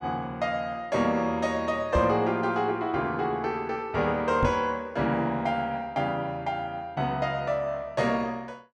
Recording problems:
knock on the microphone; at 2 s and at 4.5 s; peak +4 dB vs average level

